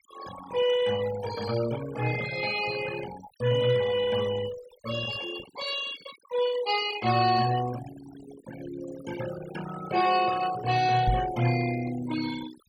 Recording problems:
denoising artefacts; signal-to-artefact ratio 11 dB
knock on the microphone; at 11 s; peak +5 dB vs average level

